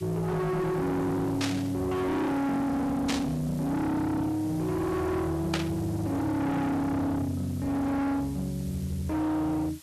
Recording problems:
distorted audio; hard clipping, uneven, signal-to-distortion ratio 7 dB
background hiss; slope +2 dB per octave, SNR 21 dB
burst of static; at 1.5 s, at 3 s and at 5.5 s; peak +2 dB vs average level

